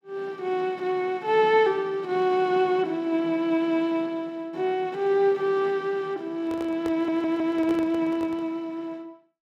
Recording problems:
microphone handling noise; from 6.5 to 8.5 s; peak -7 dB vs average level
audio stuttering; at 7 s

